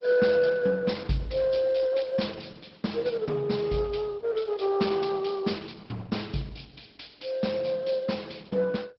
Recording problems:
lossy codec; MP2, then Opus, log-spectral distance 7 dB, nothing above 5.3 kHz

